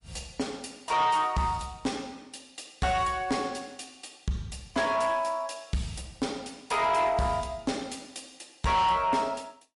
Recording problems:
lossy compression; MP3, log-spectral distance 5 dB, nothing above 11 kHz
distorted audio; soft clipping, signal-to-distortion ratio 10 dB

